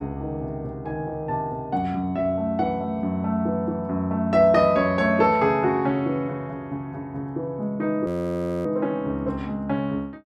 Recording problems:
frozen audio; at 8 s for 0.5 s

